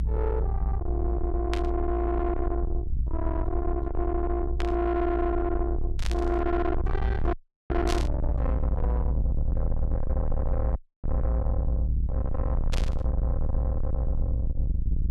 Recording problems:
distorted audio; soft clipping, signal-to-distortion ratio 7 dB
rumble; below 76 Hz, SNR -1 dB
static burst; 5 times, first at 1.5 s; peak +1 dB vs average level
dropout; at 7.5 s and at 11 s

